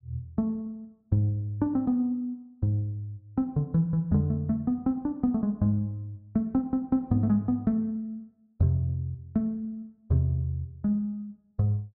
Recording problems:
none

